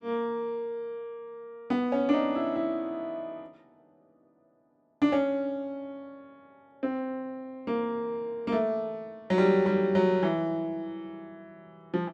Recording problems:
none

